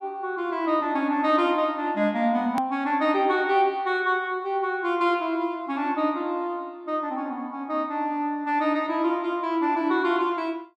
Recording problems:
edit click; at 2.5 s

